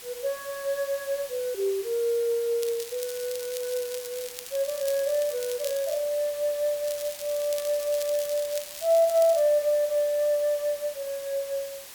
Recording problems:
hiss; slope +1 dB per octave, SNR 13 dB
crackle; from 2.5 to 6 s and from 7 to 9.5 s; loose cable, SNR 13 dB

